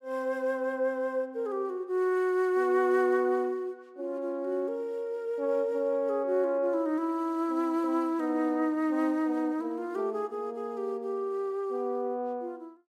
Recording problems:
none

